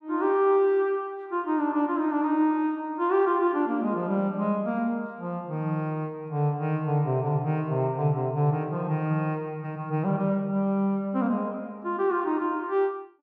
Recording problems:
none

